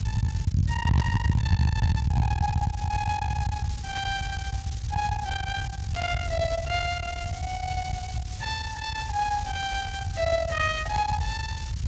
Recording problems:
lossy codec; Speex, log-spectral distance 2 dB
distortion; soft clipping, signal-to-distortion ratio 8 dB
hiss; slope +3 dB per octave, SNR 13 dB
rumble; below 140 Hz, SNR 1 dB
static burst; 4 times, first at 1 s; peak -6 dB vs average level

